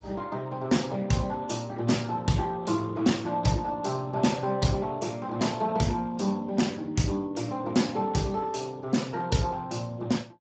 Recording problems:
codec artefacts; Speex, log-spectral distance 4 dB, nothing above 7.6 kHz

